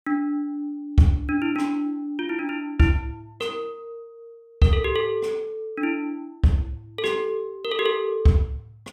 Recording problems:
none

